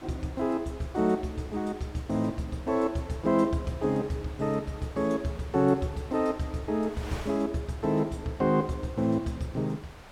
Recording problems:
wind on the microphone; below 2.1 kHz, SNR 18 dB

